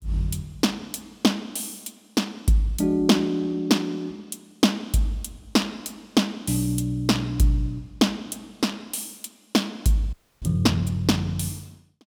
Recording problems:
audio freezing; at 10 s

